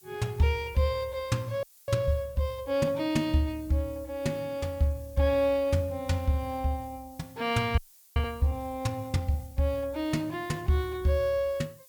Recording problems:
background hiss; SNR 25 dB
audio freezing; at 1.5 s and at 8 s

